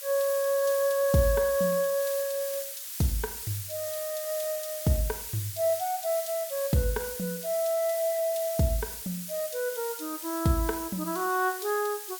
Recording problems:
hiss; slope +5 dB per octave, SNR 7 dB

